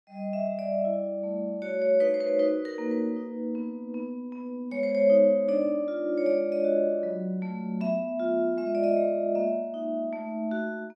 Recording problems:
none

